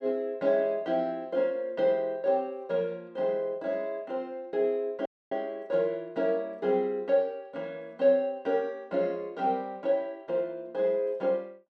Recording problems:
audio cutting out; at 5 s

